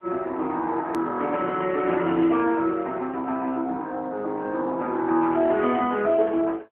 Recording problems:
phone line; 220 Hz to 3.6 kHz, AMR-NB
edit click; at 1 s

